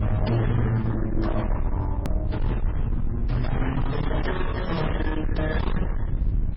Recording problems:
codec artefacts; Opus, then MP3, log-spectral distance 2 dB, nothing above 5.5 kHz
distortion; soft clipping, signal-to-distortion ratio 7 dB
low-frequency rumble; below 100 Hz, SNR 1 dB
click at an edit; at 2 s

